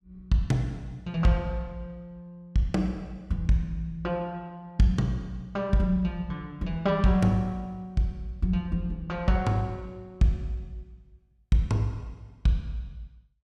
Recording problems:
none

